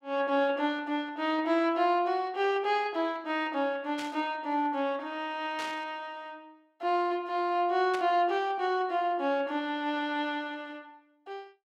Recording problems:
static burst; at 4 s, at 5.5 s and at 8 s; peak -6 dB vs average level

